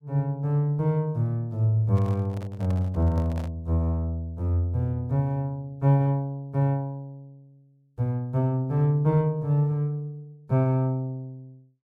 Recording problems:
handling noise; from 2 to 3.5 s; peak -11 dB vs average level

